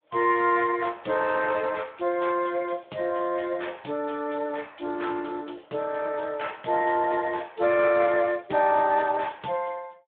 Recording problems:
phone line; 190 Hz to 3.5 kHz, Speex

